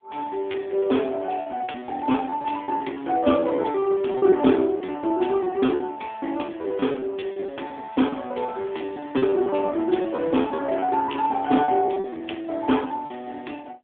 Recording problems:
telephone audio; 220 Hz to 3.6 kHz, AMR-NB
packet loss; 14% of the sound replaced, filled with repeated pitch periods

